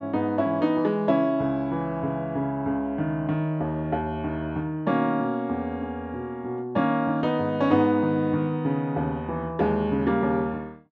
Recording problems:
treble cut off; nothing above 8 kHz

